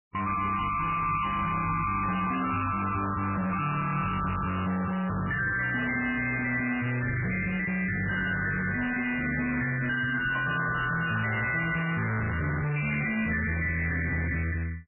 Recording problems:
lossy codec; MP3, log-spectral distance 9 dB, nothing above 2.8 kHz
distortion; soft clipping, signal-to-distortion ratio 6 dB

